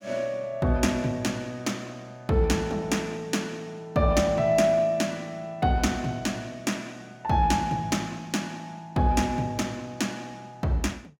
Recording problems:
none

